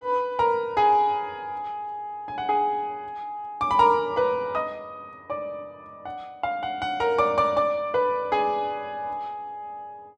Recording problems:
none

